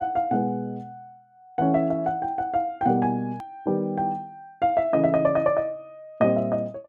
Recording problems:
edit click; at 3.5 s

